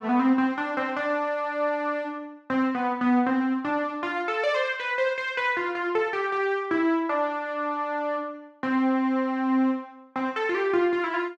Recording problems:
none

